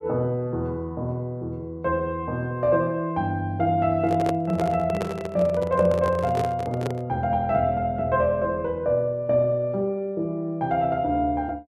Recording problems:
microphone handling noise; from 4 to 7 s; peak -1 dB vs average level

